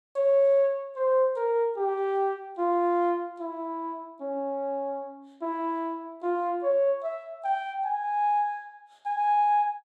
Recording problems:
none

